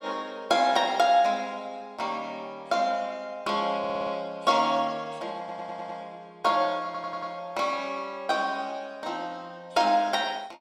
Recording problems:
stutter; at 4 s, at 5.5 s and at 7 s

